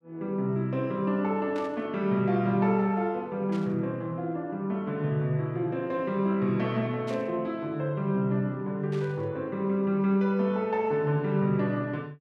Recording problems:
static burst; 4 times, first at 1.5 s; peak -12 dB vs average level

